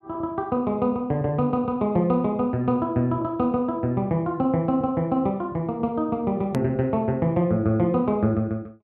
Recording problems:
hard cut with a click; at 6.5 s

